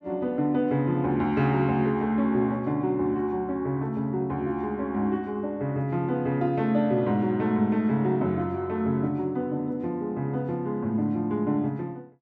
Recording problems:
none

